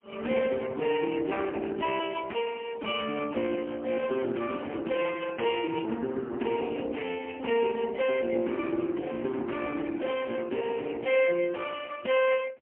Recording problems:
telephone audio; 220 Hz to 3.1 kHz, AMR-NB, then MP3

